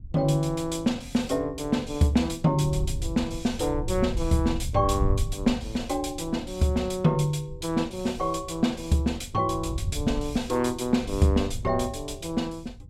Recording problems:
wind noise; below 100 Hz, SNR 10 dB

